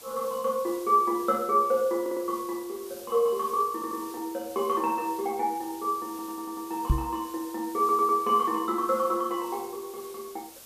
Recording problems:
hiss; SNR 18 dB
stutter; 4 times, first at 2 s
microphone bump; at 7 s; peak +7 dB vs average level

